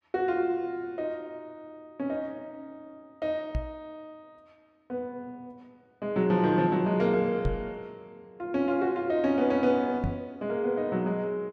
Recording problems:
microphone thump; at 3.5 s, at 7.5 s and at 10 s; peak +2 dB vs average level

